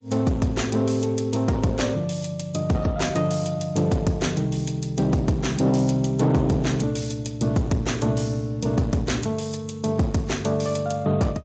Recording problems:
codec artefacts; MP3, then Speex, log-spectral distance 4 dB, nothing above 7.3 kHz
distorted audio; soft clipping, signal-to-distortion ratio 11 dB

